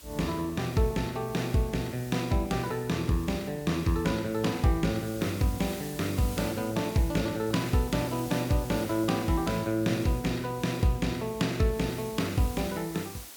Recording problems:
background hiss; slope -1 dB per octave, SNR 16 dB

